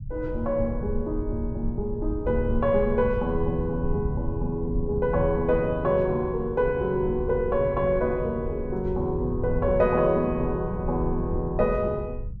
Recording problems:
low-frequency rumble; below 96 Hz, SNR 8 dB

